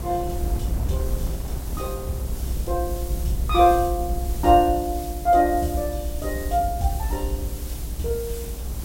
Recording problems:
hiss; slope +1 dB per octave, SNR 16 dB
low-frequency rumble; below 64 Hz, SNR 6 dB
wind noise; below 430 Hz, SNR 18 dB

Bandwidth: 16 kHz